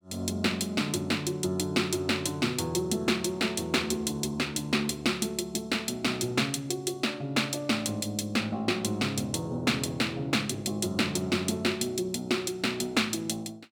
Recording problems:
none

